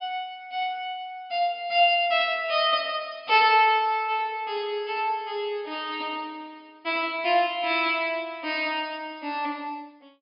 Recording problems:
treble cut off; nothing above 5.5 kHz

